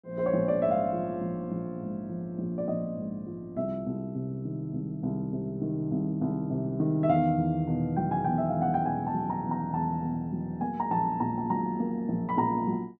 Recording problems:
none

